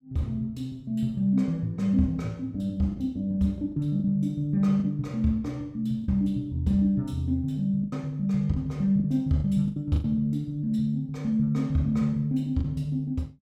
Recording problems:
packet loss; 5% of the sound replaced, filled with the last packet

